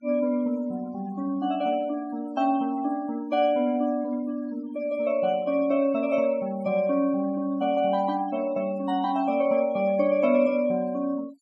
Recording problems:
denoising artefacts; signal-to-artefact ratio 23 dB

